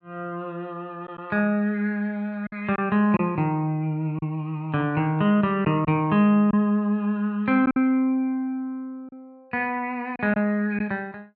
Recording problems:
lost packets; 3% of the sound replaced, filled with silence

